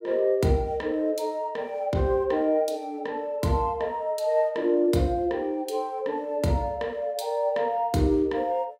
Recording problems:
none

